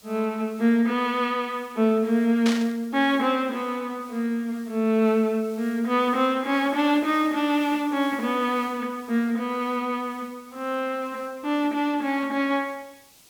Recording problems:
hiss; SNR 25 dB
static burst; at 2.5 s; peak -1 dB vs average level

